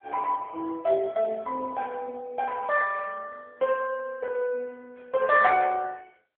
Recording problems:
phone line; 370 Hz to 2.2 kHz, AMR-NB

